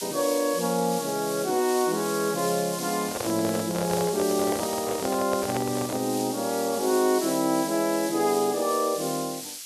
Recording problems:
background hiss; SNR 8 dB
microphone handling noise; from 3 to 6 s; peak -1 dB vs average level

